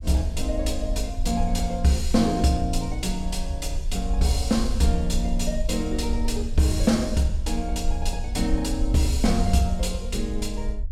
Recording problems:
rumble; below 56 Hz, SNR 5 dB

